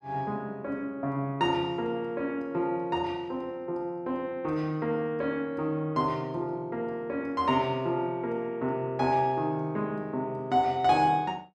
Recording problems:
none

